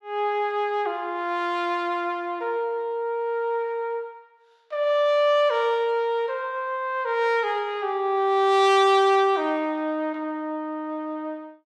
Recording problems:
none

